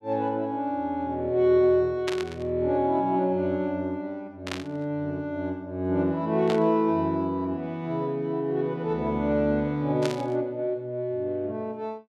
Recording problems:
static burst; 4 times, first at 2 s; peak -1 dB vs average level

